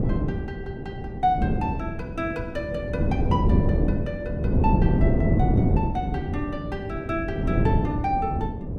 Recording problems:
wind noise; below 240 Hz, SNR -5 dB

